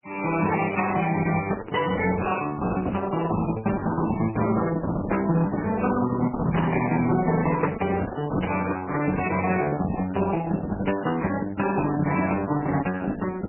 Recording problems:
lossy compression; Opus, then MP3, log-spectral distance 4 dB, nothing above 2.7 kHz

